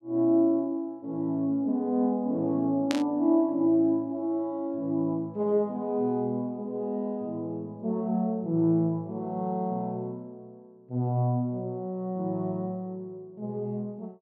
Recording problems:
static burst; at 3 s; peak 0 dB vs average level

